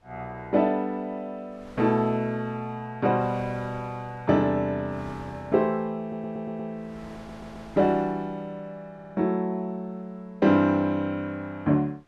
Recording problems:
wind noise; below 1.3 kHz, SNR 23 dB
audio stuttering; at 6 s, at 7 s and at 9 s

